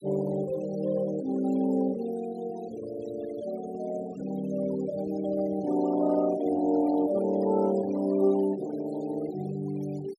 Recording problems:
noise reduction artefacts; signal-to-artefact ratio 19 dB

